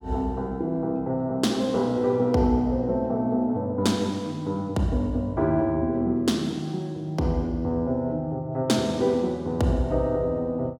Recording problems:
none

